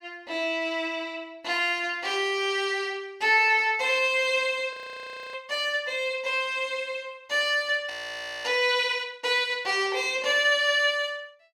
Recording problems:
frozen audio; at 4.5 s for 0.5 s and at 8 s for 0.5 s

